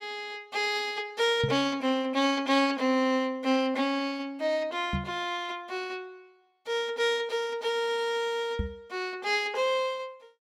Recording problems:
microphone bump; at 1.5 s, at 5 s and at 8.5 s; peak +2 dB vs average level

